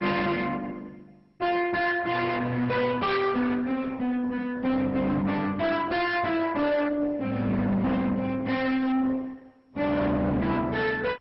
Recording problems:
lossy codec; Opus, then MP2, log-spectral distance 3 dB, nothing above 5.3 kHz
distorted audio; soft clipping, signal-to-distortion ratio 7 dB

